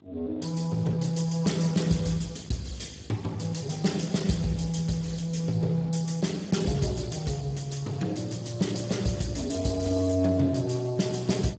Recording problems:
lossy compression; Speex, log-spectral distance 5 dB, nothing above 7.8 kHz
electrical hum; 50 Hz, harmonics up to 900 Hz, SNR 26 dB

